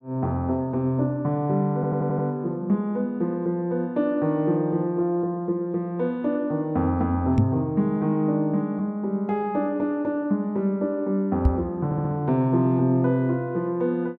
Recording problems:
audio stuttering; at 2 s and at 12 s
microphone thump; at 7.5 s and at 11 s; peak +8 dB vs average level

